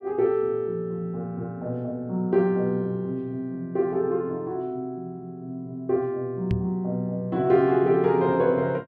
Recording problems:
microphone bump; at 6.5 s; peak +3 dB vs average level

